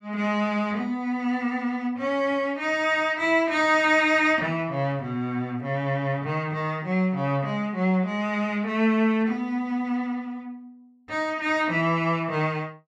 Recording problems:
none

